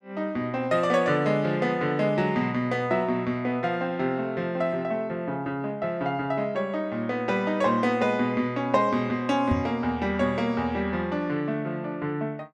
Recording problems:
knock on the microphone; at 9.5 s; peak +2 dB vs average level

